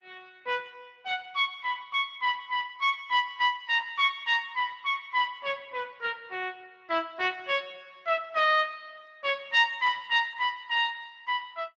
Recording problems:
lossy compression; Speex, then Opus, log-spectral distance 4 dB

